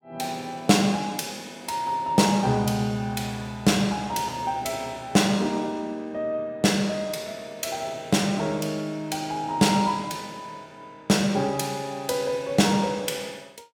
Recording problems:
none

